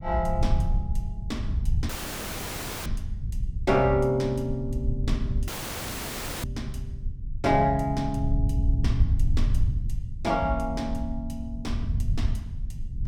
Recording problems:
low-frequency rumble; below 86 Hz, SNR 2 dB
audio cutting out; at 2 s for 1 s and at 5.5 s for 1 s

